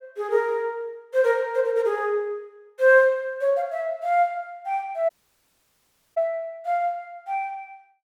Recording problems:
dropout; at 5 s for 1 s

